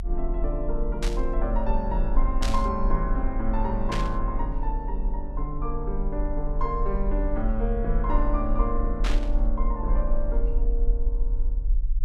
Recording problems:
low-frequency rumble; below 40 Hz, strongest tone 22 Hz, SNR -2 dB
burst of static; 4 times, first at 1 s; peak +2 dB vs average level

